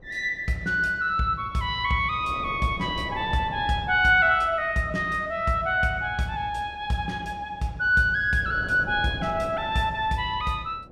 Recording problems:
wind noise; below 540 Hz, SNR 18 dB

